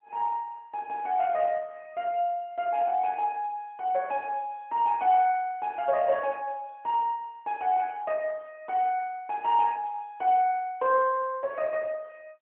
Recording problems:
telephone audio; 280 Hz to 3.3 kHz, AMR-NB

